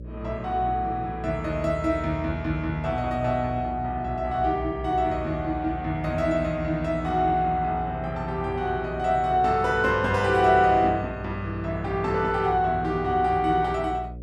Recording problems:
hum; 60 Hz, harmonics up to 600 Hz, SNR 13 dB

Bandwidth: 13.5 kHz